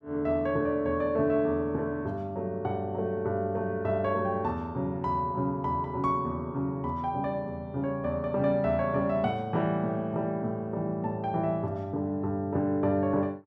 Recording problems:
none

